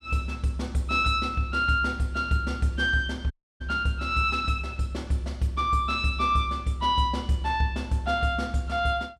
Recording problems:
dropout; at 3.5 s

